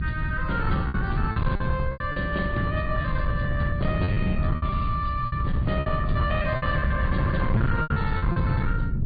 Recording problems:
low-pass filter; nothing above 4.7 kHz
lossy compression; AAC, log-spectral distance 2 dB
distorted audio; soft clipping, signal-to-distortion ratio 10 dB
rumble; below 150 Hz, SNR -1 dB
packet loss; 10% of the sound replaced, filled with repeated pitch periods

